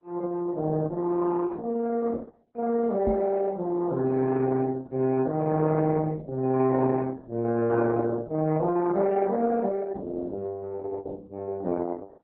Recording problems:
codec artefacts; MP3, then Opus, log-spectral distance 3 dB
microphone bump; at 3 s; peak +1 dB vs average level

